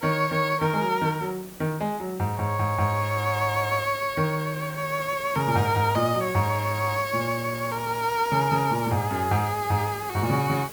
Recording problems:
background hiss; slope -4 dB per octave, SNR 15 dB

